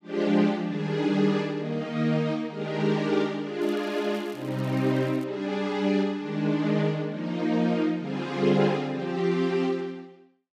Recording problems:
crackle; from 3.5 to 5 s; loose cable, SNR 27 dB

